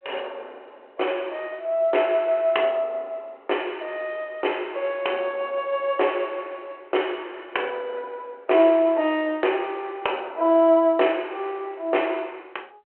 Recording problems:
phone line; 280 Hz to 3.2 kHz, G.726

